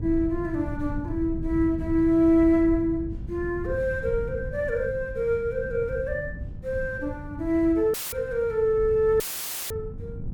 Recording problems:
hum; 50 Hz, harmonics up to 800 Hz, SNR 22 dB
wind noise; below 130 Hz, SNR 12 dB
audio cutting out; at 8 s and at 9 s for 0.5 s; filled with static

